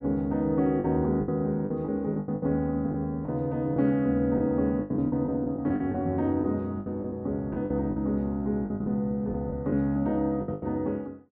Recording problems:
packet loss; 11% of the sound replaced, filled with the last packet

